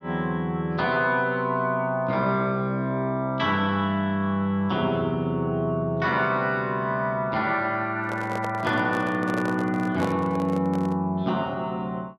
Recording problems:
handling noise; from 8 to 11 s; peak -2 dB vs average level

